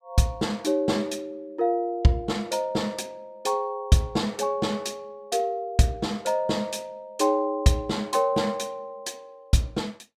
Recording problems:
none

